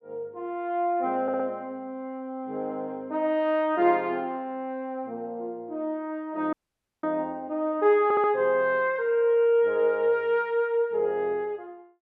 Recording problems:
stutter; at 1 s and at 8 s
dropout; at 6.5 s for 0.5 s

